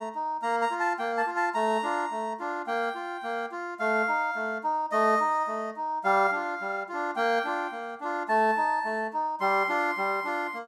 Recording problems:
none

